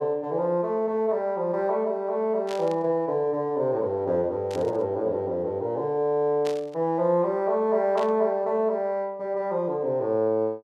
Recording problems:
burst of static; 4 times, first at 2.5 s; peak -9 dB vs average level

